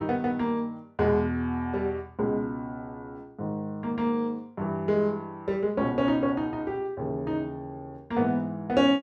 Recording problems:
none

